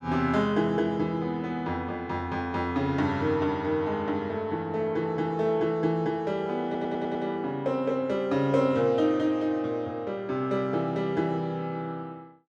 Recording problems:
audio stuttering; at 6.5 s

